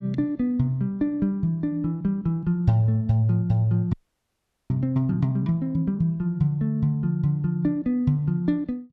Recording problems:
frozen audio; at 4 s for 1 s

